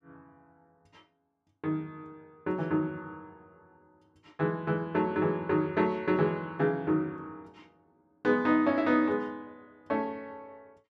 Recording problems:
none

